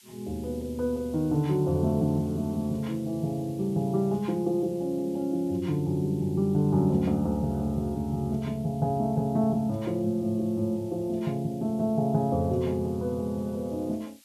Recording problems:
hiss; SNR 27 dB

